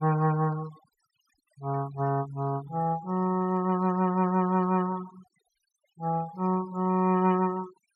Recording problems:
denoising artefacts; signal-to-artefact ratio 21 dB

